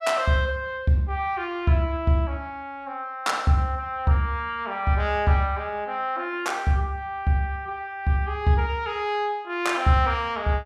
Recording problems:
none

